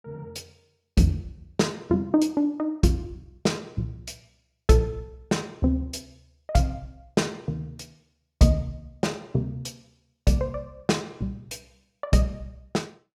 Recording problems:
none

